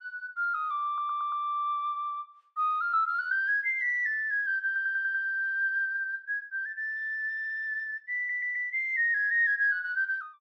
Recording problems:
audio stuttering; 4 times, first at 1 s

